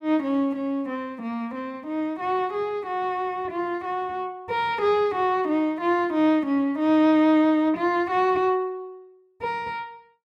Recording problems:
none

